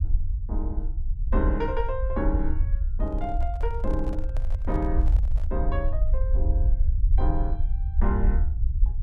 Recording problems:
low-frequency rumble; below 60 Hz, SNR -5 dB
microphone handling noise; from 3 to 5.5 s; peak -6 dB vs average level

